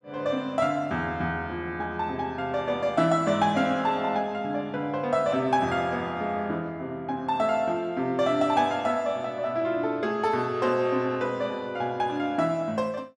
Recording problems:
none

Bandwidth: 12 kHz